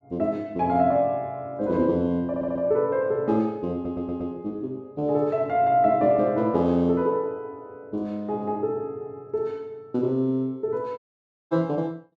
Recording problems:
stutter; at 2.5 s and at 3.5 s
audio cutting out; at 11 s for 0.5 s

